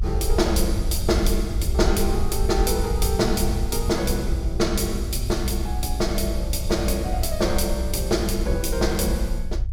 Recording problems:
rumble; below 66 Hz, SNR 3 dB

